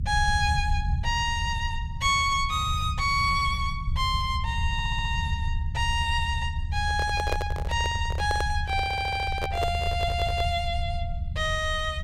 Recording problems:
low-frequency rumble; below 84 Hz, SNR 4 dB
audio stuttering; at 4.5 s, at 9 s and at 10 s
handling noise; from 7 to 11 s; peak +1 dB vs average level

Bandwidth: 16 kHz